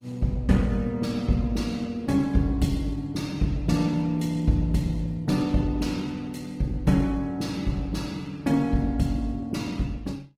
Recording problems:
lossy compression; Opus, log-spectral distance 3 dB

